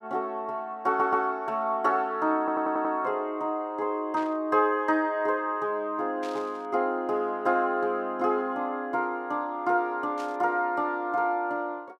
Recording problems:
audio stuttering; at 1 s and at 2.5 s
burst of static; at 4 s, at 6 s and at 10 s; peak -13 dB vs average level

